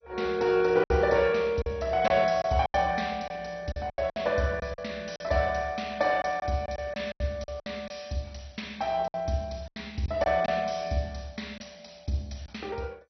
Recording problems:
codec artefacts; MP2, log-spectral distance 4 dB, nothing above 6 kHz
lost packets; 8% of the sound replaced, filled with silence

